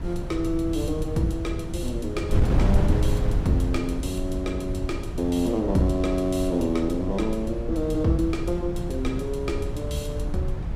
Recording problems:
wind on the microphone; below 120 Hz, SNR 2 dB

